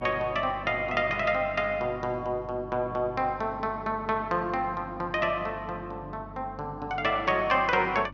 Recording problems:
electrical hum; 50 Hz, harmonics up to 300 Hz, SNR 17 dB

